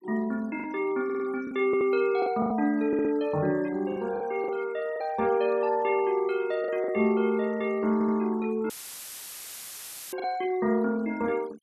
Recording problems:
denoising artefacts; signal-to-artefact ratio 21 dB
packet loss; 5% of the sound replaced, filled with the last packet
audio stuttering; 4 times, first at 1 s
dropout; at 8.5 s for 1.5 s; filled with static

